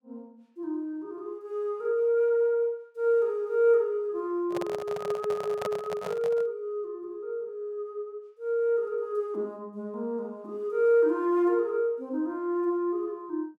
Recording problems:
microphone handling noise; from 4.5 to 6.5 s; peak -1 dB vs average level

